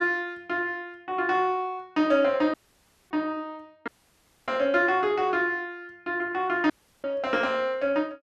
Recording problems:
dropout; at 2.5 s for 0.5 s, at 4 s for 0.5 s and at 6.5 s

